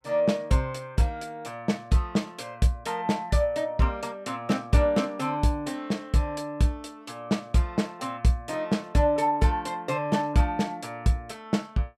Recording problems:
none

